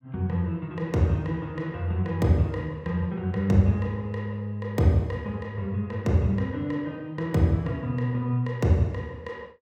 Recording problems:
none

